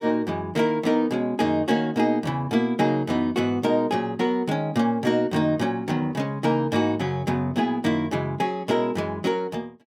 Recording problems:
none

